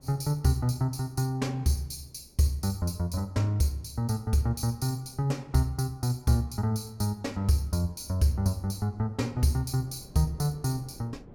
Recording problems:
wind noise; below 340 Hz, SNR 26 dB

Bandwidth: 17.5 kHz